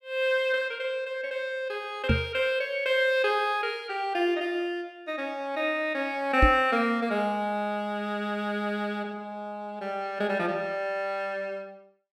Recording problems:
microphone thump; at 2 s and at 6.5 s; peak +8 dB vs average level

